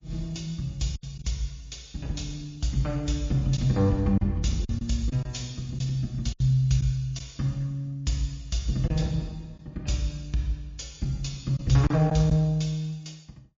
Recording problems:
lossy compression; MP3, log-spectral distance 3 dB, nothing above 7.1 kHz
lost packets; 3% of the sound replaced, filled with silence

